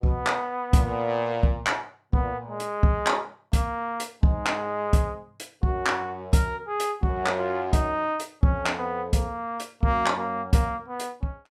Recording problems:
none

